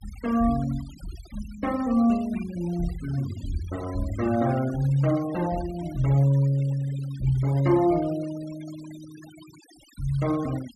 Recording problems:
denoising artefacts; signal-to-artefact ratio 20 dB

